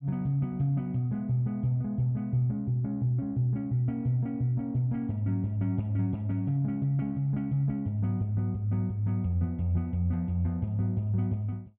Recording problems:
none

